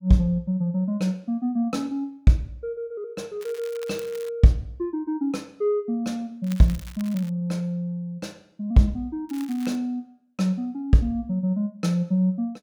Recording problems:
crackle; at 3.5 s, at 6.5 s and at 9.5 s; loose cable, SNR 21 dB

